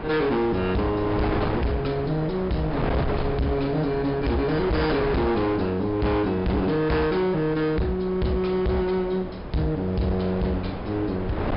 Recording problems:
low-pass filter; nothing above 5.5 kHz
distorted audio; hard clipping, signal-to-distortion ratio 7 dB
wind noise; below 770 Hz, SNR 7 dB

